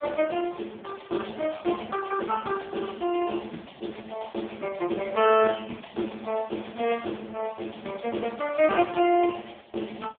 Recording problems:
telephone audio; 190 Hz to 3.5 kHz, AMR-NB

